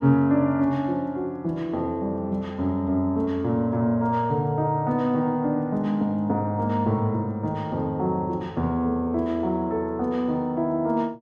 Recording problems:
none

